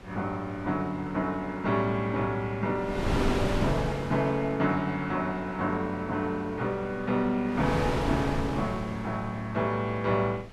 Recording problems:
wind on the microphone; below 770 Hz, SNR 5 dB

